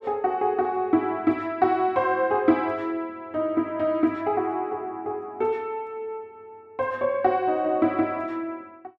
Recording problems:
none

